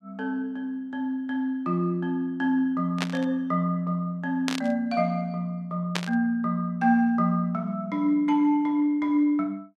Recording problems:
burst of static; at 3 s, at 4.5 s and at 6 s; peak +2 dB vs average level

